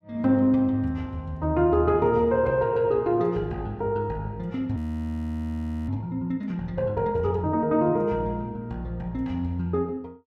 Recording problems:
frozen audio; at 5 s for 1 s

